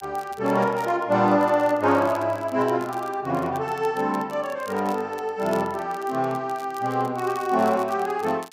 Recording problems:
crackle; vinyl, SNR 24 dB

